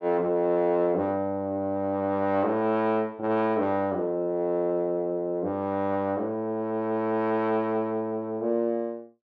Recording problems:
none

